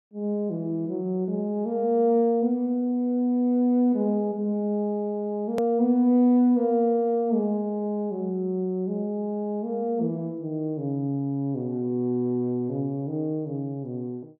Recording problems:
click at an edit; at 5.5 s

